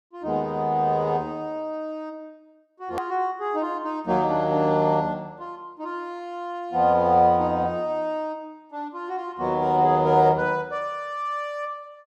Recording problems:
hard cut with a click; at 3 s

